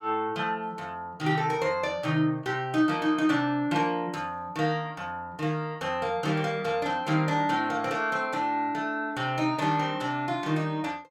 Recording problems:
none

